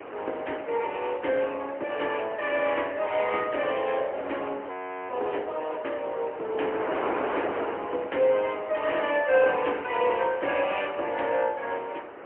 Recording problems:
telephone audio; 300 Hz to 3.1 kHz, AMR-NB, then MP3
wind noise; below 1.3 kHz, SNR 10 dB
frozen audio; at 4.5 s

